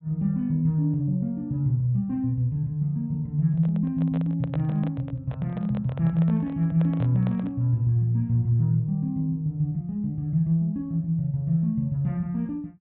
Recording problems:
treble cut off; nothing above 4 kHz
microphone handling noise; from 3.5 to 7.5 s; peak -8 dB vs average level

